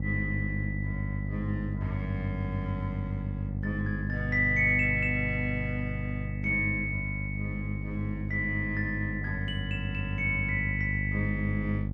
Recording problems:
hum; 50 Hz, harmonics up to 550 Hz, SNR 3 dB

